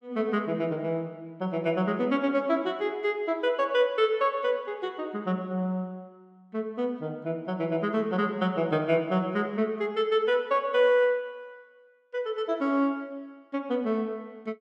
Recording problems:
none

